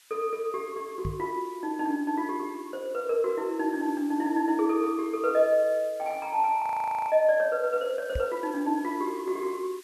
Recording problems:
hiss; SNR 25 dB
microphone bump; at 1 s and at 8 s; peak -1 dB vs average level
frozen audio; at 6.5 s

